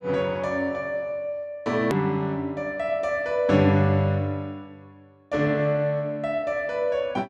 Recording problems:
hard cut with a click; at 2 s

